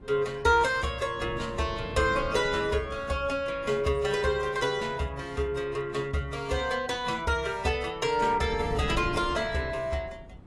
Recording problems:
lossy compression; AAC, log-spectral distance 2 dB, nothing above 11 kHz
wind on the microphone; below 220 Hz, SNR 15 dB

